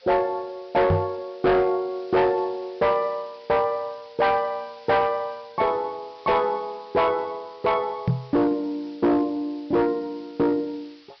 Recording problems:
treble missing; nothing above 5.5 kHz
distorted audio; hard clipping, signal-to-distortion ratio 10 dB
hiss; SNR 27 dB
microphone bump; at 1 s and at 8 s; peak +5 dB vs average level

